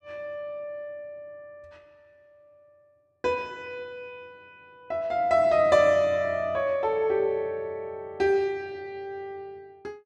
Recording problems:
none

